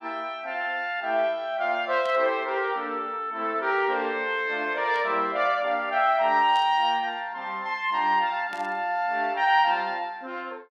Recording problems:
static burst; 4 times, first at 2 s; peak -13 dB vs average level

